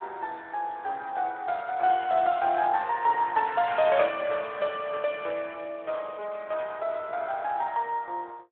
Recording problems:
telephone audio; 340 Hz to 3.6 kHz, Speex

